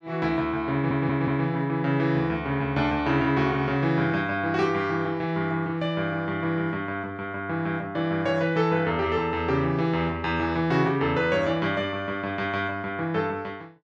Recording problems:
audio stuttering; at 0.5 s

